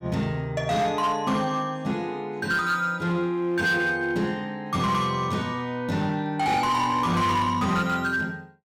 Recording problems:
distortion; hard clipping, signal-to-distortion ratio 12 dB

